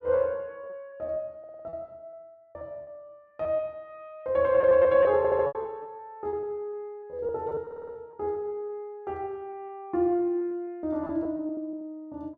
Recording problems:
lost packets; 11% of the sound replaced, filled with repeated pitch periods
stutter; at 1.5 s, at 5 s and at 7.5 s

